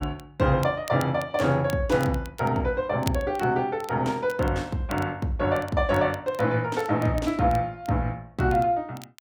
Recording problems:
crackling; vinyl, SNR 21 dB

